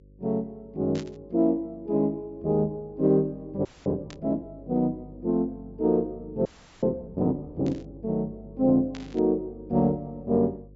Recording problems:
low-pass filter; nothing above 8 kHz
electrical hum; 50 Hz, harmonics up to 550 Hz, SNR 22 dB
burst of static; 4 times, first at 1 s; peak -10 dB vs average level
audio freezing; at 3.5 s and at 6.5 s

